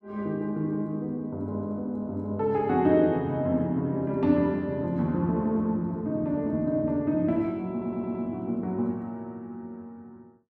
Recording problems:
stutter; at 7.5 s

